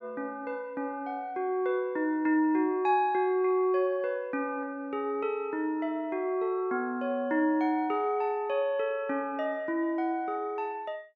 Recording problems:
none

